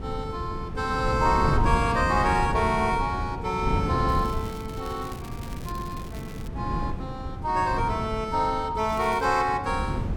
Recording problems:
wind noise; below 210 Hz, SNR 5 dB
crackle; from 4 to 6.5 s and at 9 s; loose cable, SNR 21 dB

